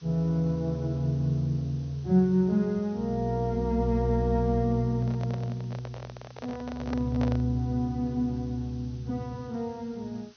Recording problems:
treble cut off; nothing above 6.3 kHz
hiss; slope +1 dB per octave, SNR 29 dB
microphone handling noise; from 5 to 7.5 s; peak -4 dB vs average level

